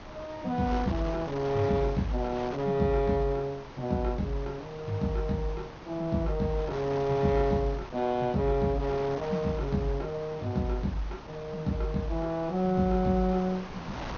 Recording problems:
treble missing; nothing above 6.6 kHz
wind noise; below 1.4 kHz, SNR 13 dB

